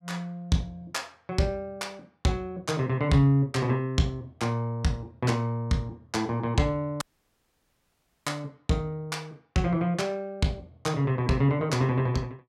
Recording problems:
audio cutting out; at 7 s for 1.5 s

